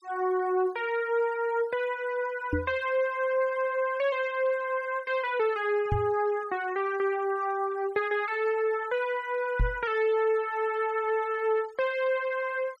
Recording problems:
noise reduction artefacts; signal-to-artefact ratio 25 dB
knock on the microphone; at 2.5 s, at 6 s and at 9.5 s; peak +4 dB vs average level

